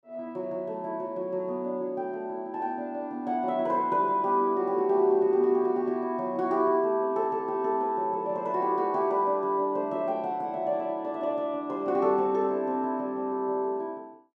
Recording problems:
none

